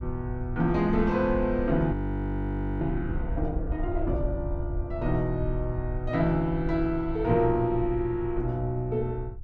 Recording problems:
low-frequency rumble; below 78 Hz, SNR 7 dB
frozen audio; at 2 s for 1 s

